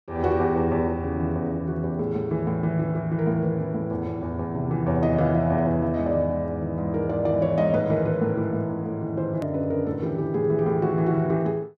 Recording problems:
edit click; at 9.5 s

